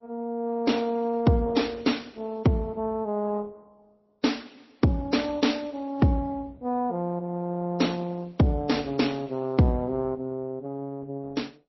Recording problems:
lossy compression; Opus, then MP3, log-spectral distance 3 dB, nothing above 5.7 kHz

